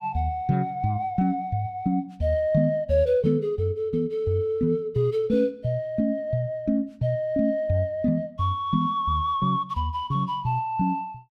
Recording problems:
none

